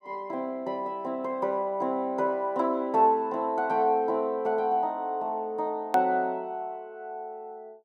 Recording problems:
hard cut with a click; at 6 s

